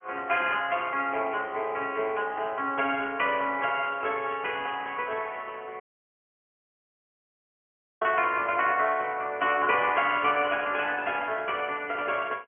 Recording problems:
phone line; 300 Hz to 3.3 kHz, Speex
audio cutting out; at 6 s for 2 s

